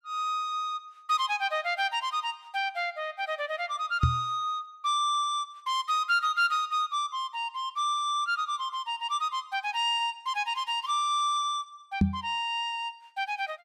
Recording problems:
microphone bump; at 4 s and at 12 s; peak +9 dB vs average level

